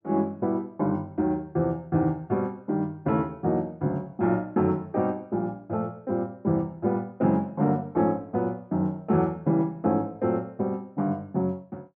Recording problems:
none

